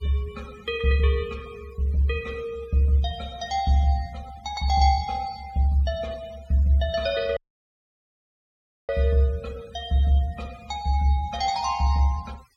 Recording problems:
noise reduction artefacts; signal-to-artefact ratio 24 dB
audio cutting out; at 7.5 s for 1.5 s

